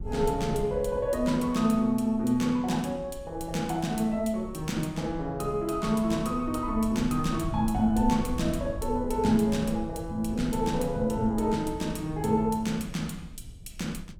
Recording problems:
low-frequency rumble; below 92 Hz, SNR 14 dB

